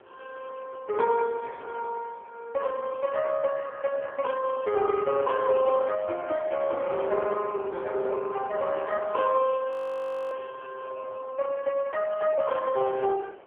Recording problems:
phone line; 340 Hz to 2.6 kHz, AMR-NB
wind on the microphone; below 940 Hz, SNR 22 dB
frozen audio; at 9.5 s for 0.5 s

